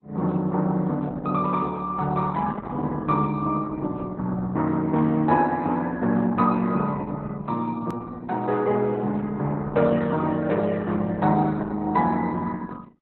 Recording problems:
codec artefacts; Opus, log-spectral distance 3 dB
hard cut with a click; at 8 s

